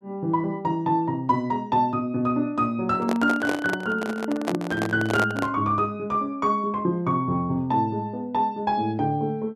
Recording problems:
handling noise; from 3 to 5.5 s; peak +2 dB vs average level

